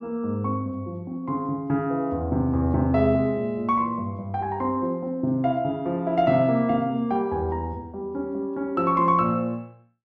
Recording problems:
none

